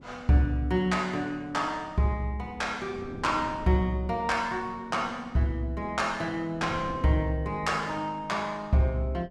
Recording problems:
wind on the microphone; below 320 Hz, SNR 18 dB

